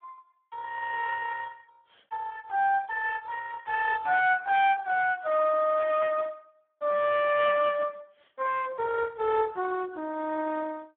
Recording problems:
phone line; 950 Hz to 2.6 kHz, Speex

